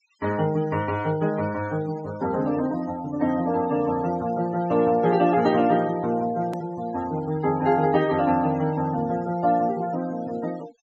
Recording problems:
low-pass filter; nothing above 8 kHz
denoising artefacts; signal-to-artefact ratio 18 dB
hard cut with a click; at 6.5 s

